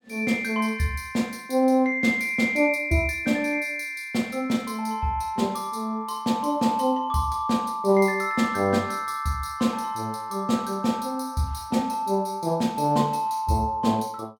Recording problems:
none

